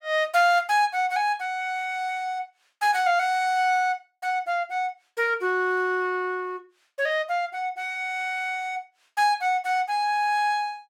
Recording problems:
none

